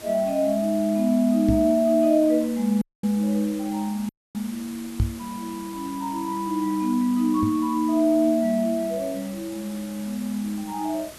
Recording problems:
hiss; slope -2 dB per octave, SNR 18 dB
microphone thump; at 1.5 s, at 5 s and at 7.5 s; peak +4 dB vs average level
audio cutting out; at 3 s and at 4 s

